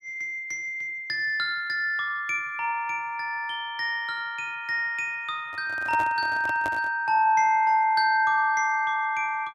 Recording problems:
handling noise; from 5.5 to 7 s; peak -6 dB vs average level

